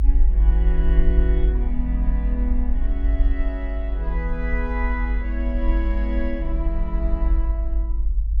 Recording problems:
low-frequency rumble; below 50 Hz, strongest tone 50 Hz, SNR -7 dB

